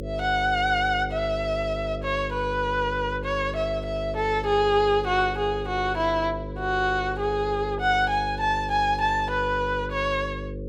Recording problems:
hum; 50 Hz, harmonics up to 550 Hz, SNR 9 dB

